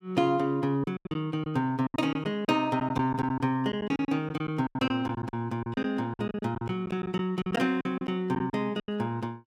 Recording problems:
lost packets; 14% of the sound replaced, filled with silence

